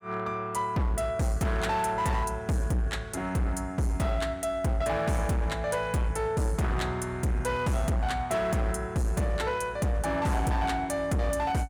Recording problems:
distortion; hard clipping, signal-to-distortion ratio 10 dB

